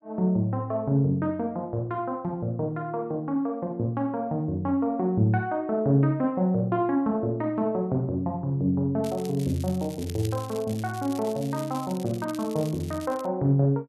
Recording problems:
crackle; from 9 to 13 s; loose cable, SNR 18 dB

